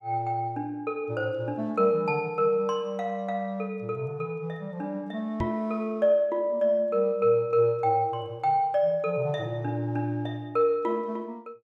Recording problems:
knock on the microphone; at 5.5 s; peak -2 dB vs average level

